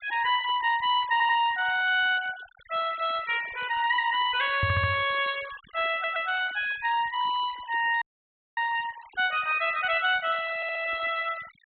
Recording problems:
treble missing; nothing above 4 kHz
noise reduction artefacts; signal-to-artefact ratio 18 dB
audio stuttering; 4 times, first at 1 s
microphone thump; at 4.5 s; peak 0 dB vs average level
audio freezing; at 8 s for 0.5 s

